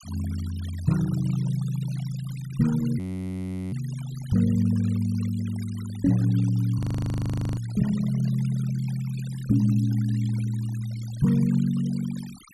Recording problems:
noise reduction artefacts; signal-to-artefact ratio 20 dB
audio freezing; at 3 s for 0.5 s and at 7 s for 1 s

